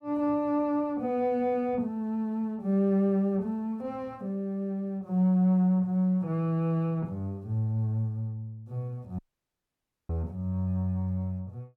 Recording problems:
audio cutting out; at 9 s for 1 s

